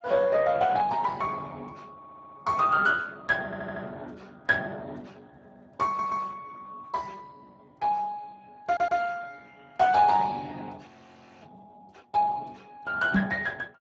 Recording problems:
lossy codec; Speex, log-spectral distance 4 dB, nothing above 7.3 kHz
audio stuttering; 4 times, first at 2 s
audio freezing; at 11 s for 0.5 s
knock on the microphone; at 13 s; peak +6 dB vs average level

